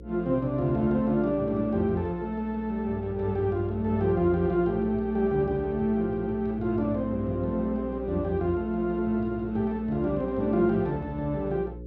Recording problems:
mains hum; 60 Hz, harmonics up to 540 Hz, SNR 14 dB

